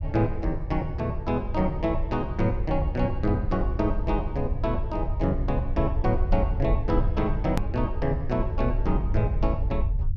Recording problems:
rumble; below 78 Hz, SNR 2 dB
click at an edit; at 7.5 s

